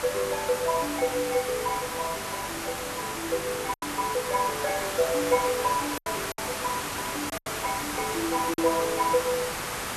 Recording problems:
electrical hum; 50 Hz, harmonics up to 900 Hz, SNR 21 dB
background hiss; SNR 3 dB
lost packets; 4% of the sound replaced, filled with silence
crackle; from 0.5 to 3 s and from 5 to 6.5 s; loose cable, SNR 24 dB

